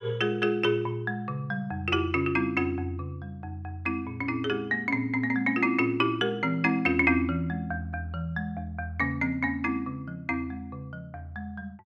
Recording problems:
none

